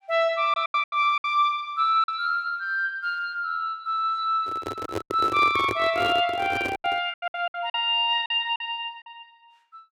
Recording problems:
packet loss; 9% of the sound replaced, filled with silence
microphone handling noise; from 4.5 to 7 s; peak -1 dB vs average level

